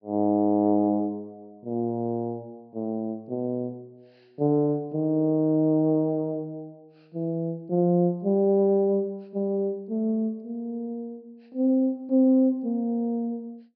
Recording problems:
treble missing; nothing above 5.5 kHz

